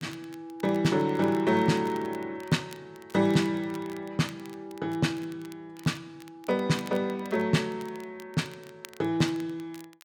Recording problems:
crackle; vinyl, SNR 23 dB

